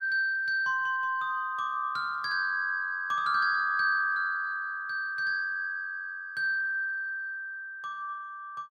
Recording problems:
none

